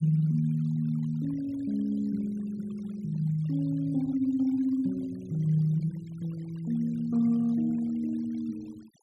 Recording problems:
noise reduction artefacts; signal-to-artefact ratio 27 dB

